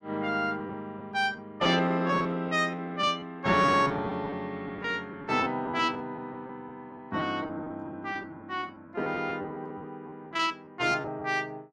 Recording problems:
lost packets; 12% of the sound replaced, filled with repeated pitch periods

